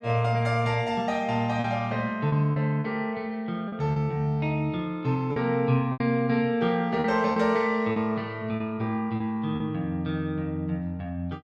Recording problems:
lost packets; 5% of the sound replaced, filled with repeated pitch periods

